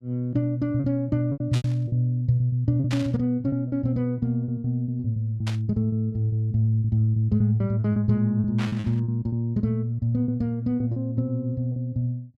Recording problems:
lost packets; 13% of the sound replaced, filled with repeated pitch periods
burst of static; 4 times, first at 1.5 s; peak -5 dB vs average level

